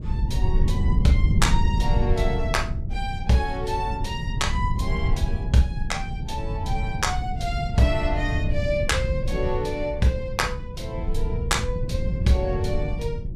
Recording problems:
rumble; below 110 Hz, SNR 1 dB

